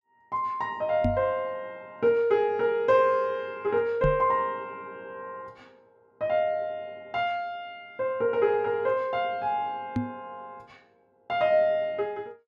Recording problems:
knock on the microphone; at 1 s, at 4 s and at 10 s; peak +3 dB vs average level

